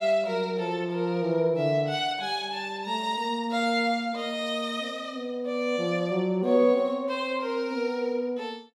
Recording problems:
none

